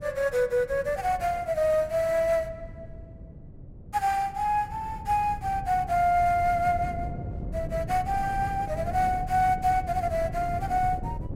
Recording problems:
wind on the microphone; below 170 Hz, SNR 12 dB

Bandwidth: 16 kHz